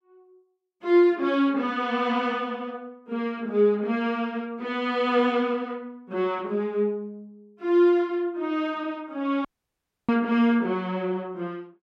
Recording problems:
audio cutting out; at 9.5 s for 0.5 s

